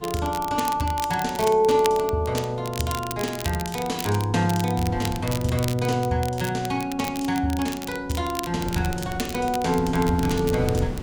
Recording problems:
wind on the microphone; below 270 Hz, SNR 14 dB
crackle; vinyl, SNR 12 dB

